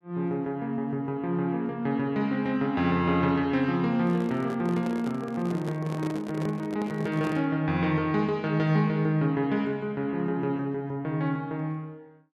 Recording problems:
microphone handling noise; from 4 to 7.5 s; peak -5 dB vs average level

